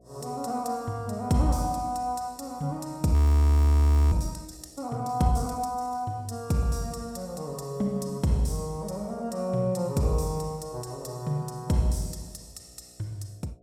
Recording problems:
hum; 60 Hz, harmonics up to 720 Hz, SNR 30 dB
frozen audio; at 3 s for 1 s

